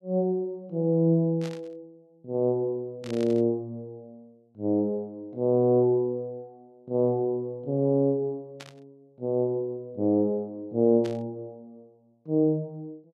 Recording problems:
static burst; 4 times, first at 1.5 s; peak -12 dB vs average level

